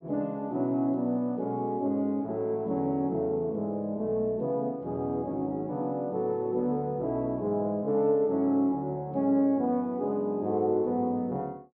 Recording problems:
none

